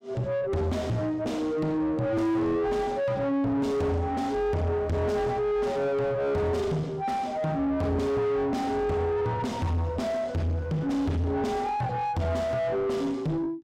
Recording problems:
distorted audio; soft clipping, signal-to-distortion ratio 5 dB

